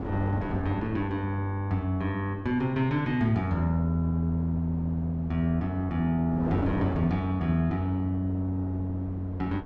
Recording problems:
wind noise; below 510 Hz, SNR 11 dB

